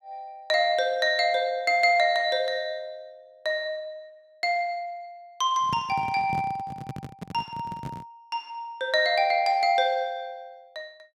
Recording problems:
handling noise; from 5.5 to 8 s; peak -5 dB vs average level

